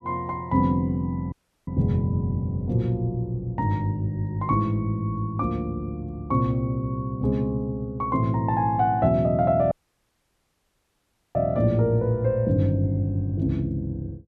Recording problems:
audio cutting out; at 1.5 s and at 9.5 s for 1.5 s

